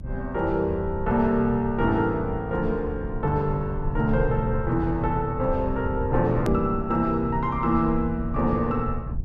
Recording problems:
low-frequency rumble; below 90 Hz, SNR 9 dB
hard cut with a click; at 6.5 s

